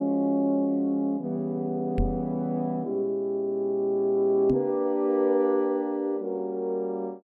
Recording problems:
microphone thump; at 2 s and at 4.5 s; peak +2 dB vs average level

